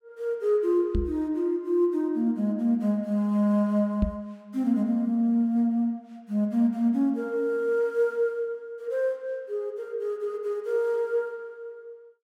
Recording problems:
microphone bump; at 1 s and at 4 s; peak +3 dB vs average level

